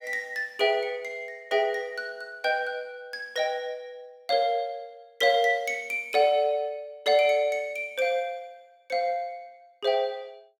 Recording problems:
none

